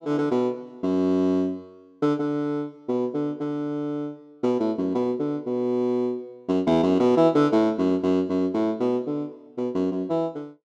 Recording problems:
none

